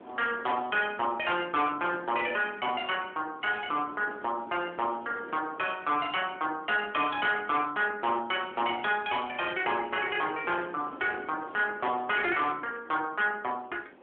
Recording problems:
telephone audio; 260 Hz to 3.5 kHz, AMR-NB
distortion; hard clipping, signal-to-distortion ratio 11 dB
wind on the microphone; below 830 Hz, SNR 20 dB

